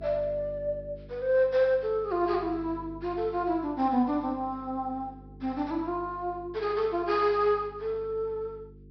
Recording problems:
low-pass filter; nothing above 5.5 kHz
hum; 50 Hz, harmonics up to 450 Hz, SNR 20 dB

